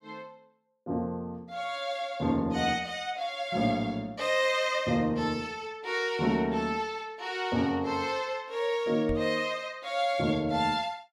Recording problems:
microphone thump; at 9 s; peak -3 dB vs average level

